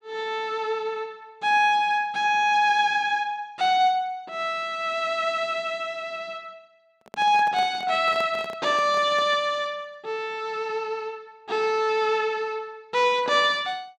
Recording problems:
handling noise; from 7 to 9.5 s; peak -10 dB vs average level

